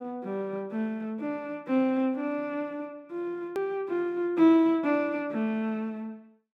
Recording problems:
edit click; at 3.5 s

